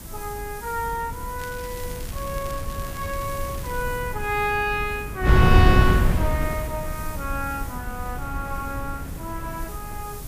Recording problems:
hiss; SNR 13 dB
wind noise; below 160 Hz, SNR -2 dB
crackling; from 1.5 to 4 s; loose cable, SNR 15 dB

